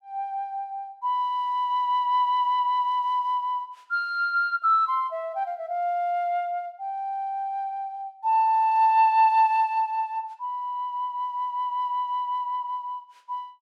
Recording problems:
none

